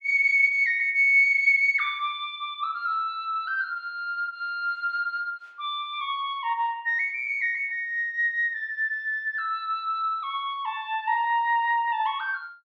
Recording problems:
none

